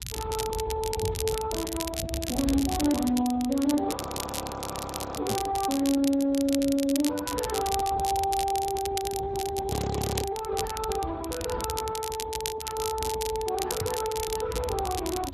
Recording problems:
lossy compression; Speex, log-spectral distance 3 dB
low-frequency rumble; below 140 Hz, SNR 12 dB
crackle; vinyl, SNR 7 dB
microphone thump; at 1 s, at 5.5 s and at 14 s; peak +1 dB vs average level
audio freezing; at 4 s for 1 s and at 9.5 s for 0.5 s

